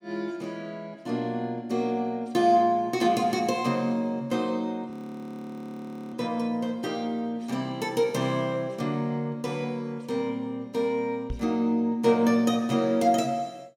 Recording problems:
frozen audio; at 5 s for 1 s
microphone bump; at 11 s; peak -3 dB vs average level

